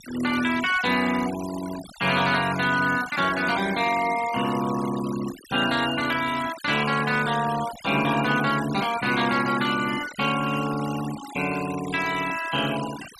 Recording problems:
denoising artefacts; signal-to-artefact ratio 12 dB

